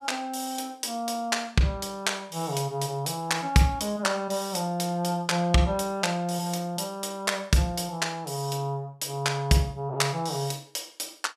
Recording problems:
none

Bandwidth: 14.5 kHz